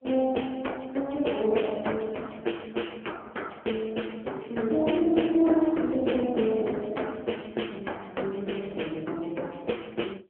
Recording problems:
telephone audio; 240 Hz to 3.3 kHz, AMR-NB

